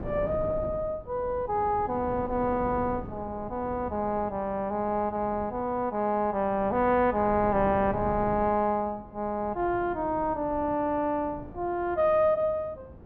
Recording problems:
wind on the microphone; below 410 Hz, SNR 14 dB

